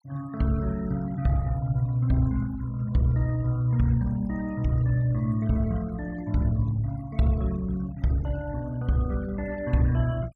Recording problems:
noise reduction artefacts; signal-to-artefact ratio 23 dB

